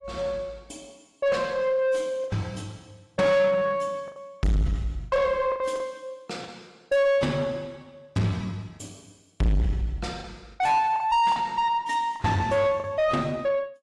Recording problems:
lossy compression; AAC, log-spectral distance 2 dB, nothing above 11 kHz
distorted audio; soft clipping, signal-to-distortion ratio 6 dB
lost packets; 6% of the sound replaced, filled with the last packet

